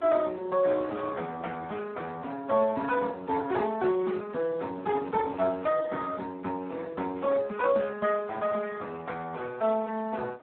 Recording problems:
phone line; 240 Hz to 2.5 kHz, Speex
wind noise; below 790 Hz, SNR 21 dB

